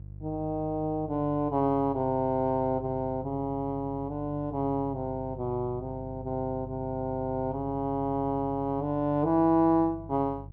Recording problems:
hum; 50 Hz, harmonics up to 350 Hz, SNR 15 dB

